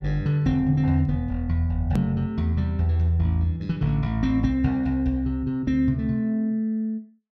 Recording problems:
click at an edit; at 2 s

